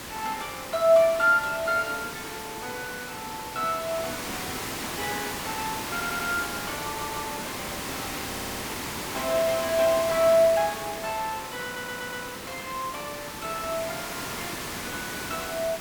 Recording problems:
hiss; slope -3 dB per octave, SNR 6 dB
audio stuttering; 4 times, first at 6 s

